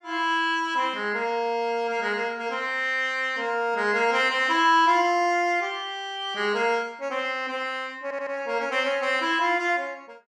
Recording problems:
audio stuttering; at 8 s

